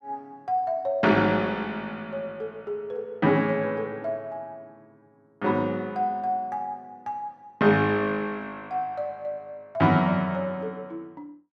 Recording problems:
none

